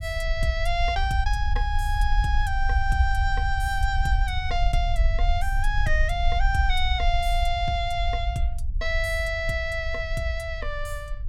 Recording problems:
low-frequency rumble; below 60 Hz, SNR 1 dB

